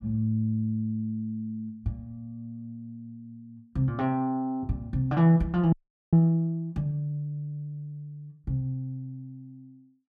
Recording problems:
frozen audio; at 5.5 s

